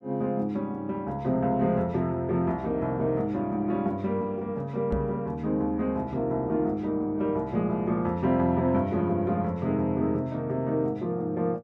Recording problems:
knock on the microphone; at 5 s; peak 0 dB vs average level

